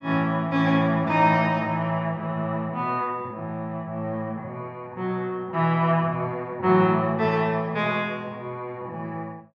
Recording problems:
none

